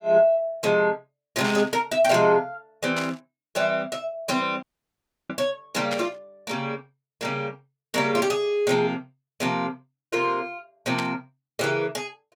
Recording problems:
burst of static; 4 times, first at 1.5 s; peak -2 dB vs average level
dropout; at 4.5 s for 0.5 s

